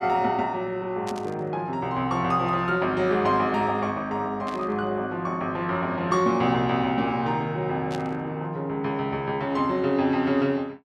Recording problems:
static burst; at 1 s, at 4.5 s and at 8 s; peak -8 dB vs average level

